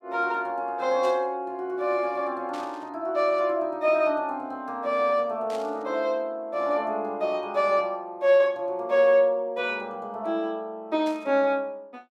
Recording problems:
burst of static; 4 times, first at 1 s; peak -13 dB vs average level

